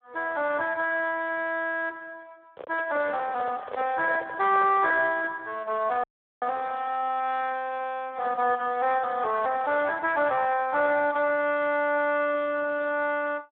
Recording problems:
phone line; 340 Hz to 3.6 kHz, Speex
microphone handling noise; from 2.5 to 5 s; peak -4 dB vs average level
dropout; at 6 s

